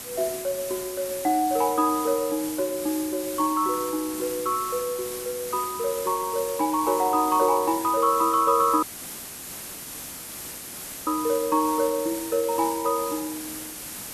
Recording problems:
background hiss; slope -1 dB per octave, SNR 9 dB
audio cutting out; at 9 s for 2 s

